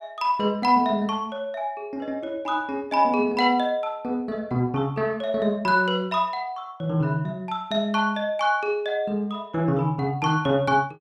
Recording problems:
none

